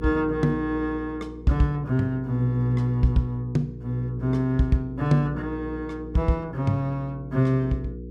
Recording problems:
hum; 60 Hz, harmonics up to 480 Hz, SNR 13 dB

